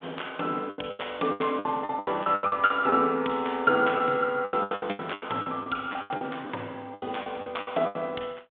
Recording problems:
phone line; 220 Hz to 3.6 kHz, G.726
packet loss; 19% of the sound replaced, filled with the last packet

